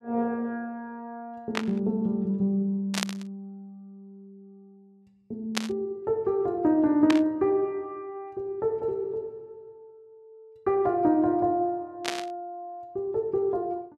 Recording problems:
burst of static; 5 times, first at 1.5 s; peak +4 dB vs average level

